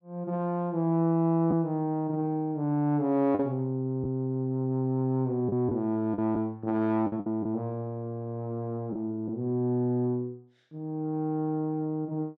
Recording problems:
lost packets; 3% of the sound replaced, filled with the last packet

